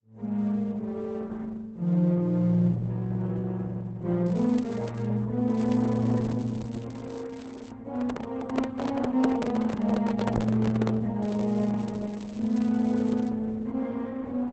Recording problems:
lossy codec; Opus, log-spectral distance 3 dB, nothing above 7.6 kHz
crackle; at 4.5 s, from 5.5 to 7.5 s and from 11 to 13 s; loose cable, SNR 26 dB
handling noise; from 8 to 11 s; peak +4 dB vs average level

